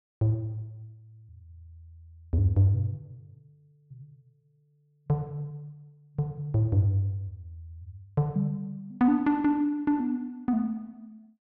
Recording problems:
none

